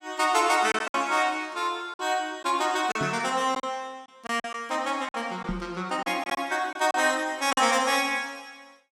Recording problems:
packet loss; 6% of the sound replaced, filled with silence
microphone bump; at 3 s and at 5.5 s; peak -2 dB vs average level

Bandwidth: 16.5 kHz